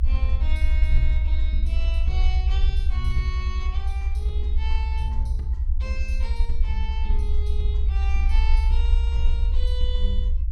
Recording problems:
rumble; below 62 Hz, SNR -12 dB

